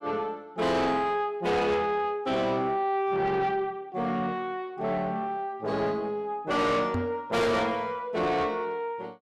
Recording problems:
distorted audio; soft clipping, signal-to-distortion ratio 7 dB
microphone thump; at 7 s; peak +1 dB vs average level

